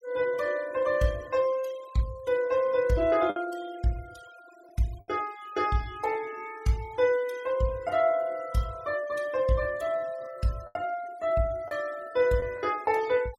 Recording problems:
noise reduction artefacts; signal-to-artefact ratio 21 dB
packet loss; 1.9% of the sound replaced, filled with the last packet

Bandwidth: 16 kHz